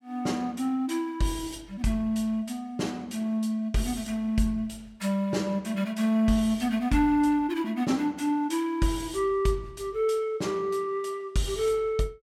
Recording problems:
none

